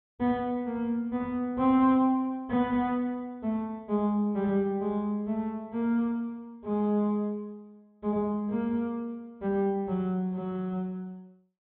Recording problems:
treble missing; nothing above 4 kHz

